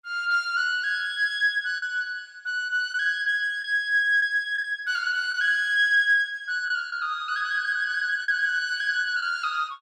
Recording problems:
lost packets; 3% of the sound replaced, filled with the last packet

